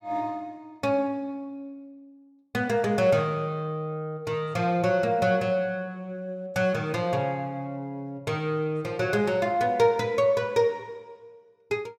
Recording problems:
none

